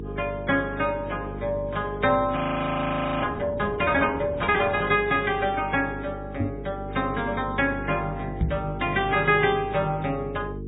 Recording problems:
treble cut off; nothing above 3.4 kHz
lossy compression; MP3, log-spectral distance 3 dB
electrical hum; 50 Hz, harmonics up to 450 Hz, SNR 11 dB
frozen audio; at 2.5 s for 1 s
microphone thump; at 6.5 s and at 8.5 s; peak +3 dB vs average level

